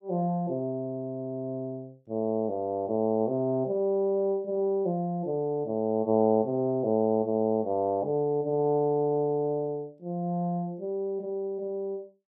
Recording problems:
none

